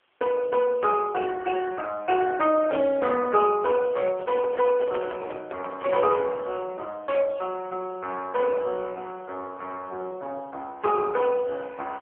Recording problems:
phone line; 260 Hz to 3.4 kHz, AMR-NB
hiss; SNR 41 dB
microphone handling noise; from 4 to 6 s; peak -7 dB vs average level

